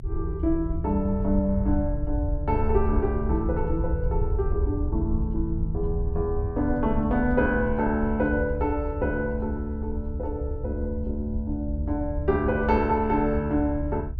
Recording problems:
rumble; below 78 Hz, SNR 4 dB

